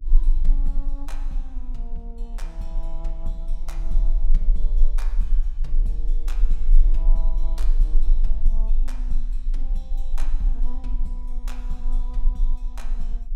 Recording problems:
electrical hum; 50 Hz, harmonics up to 300 Hz, SNR 18 dB
rumble; below 32 Hz, strongest tone 22 Hz, SNR -16 dB

